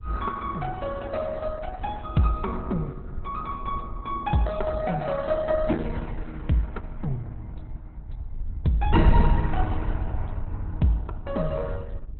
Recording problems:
lossy compression; Opus, log-spectral distance 3 dB, nothing above 4 kHz
wind noise; below 72 Hz, SNR 5 dB

